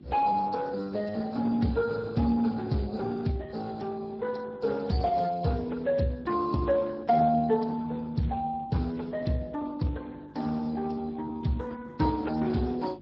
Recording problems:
codec artefacts; MP3, then Speex, log-spectral distance 4 dB
electrical hum; 50 Hz, harmonics up to 550 Hz, SNR 22 dB

